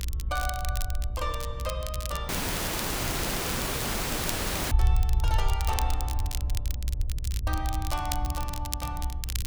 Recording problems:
electrical hum; 60 Hz, harmonics up to 1.3 kHz, SNR 21 dB
low-frequency rumble; below 68 Hz, SNR -4 dB
wind on the microphone; below 120 Hz, SNR 8 dB
crackle; vinyl, SNR 3 dB
audio cutting out; at 2.5 s for 2.5 s

